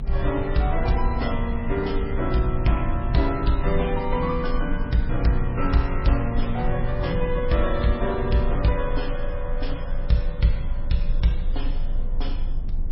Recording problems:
codec artefacts; MP3, log-spectral distance 2 dB, nothing above 5.5 kHz
rumble; below 52 Hz, strongest tone 24 Hz, SNR 5 dB

